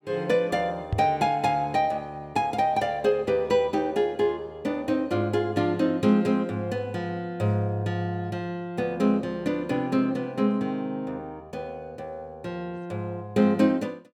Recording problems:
microphone thump; at 1 s; peak +2 dB vs average level

